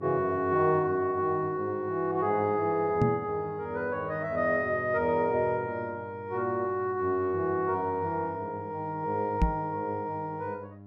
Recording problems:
mains hum; 50 Hz, harmonics up to 1 kHz, SNR 18 dB
microphone thump; at 3 s and at 9.5 s; peak +7 dB vs average level

